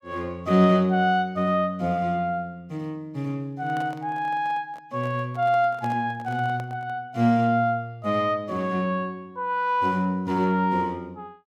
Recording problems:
handling noise; from 3.5 to 7 s; peak -10 dB vs average level

